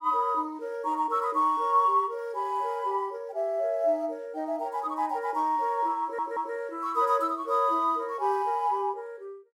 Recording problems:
stutter; at 6 s

